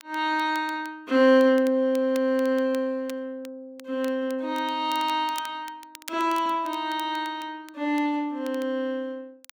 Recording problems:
crackling; vinyl, SNR 22 dB

